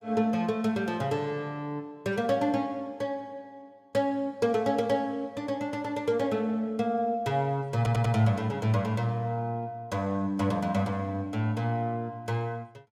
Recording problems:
stutter; at 8 s

